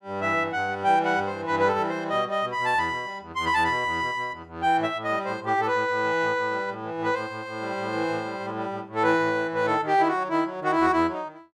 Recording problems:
none

